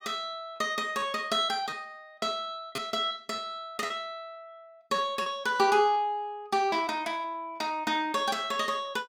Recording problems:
packet loss; 5% of the sound replaced, filled with repeated pitch periods

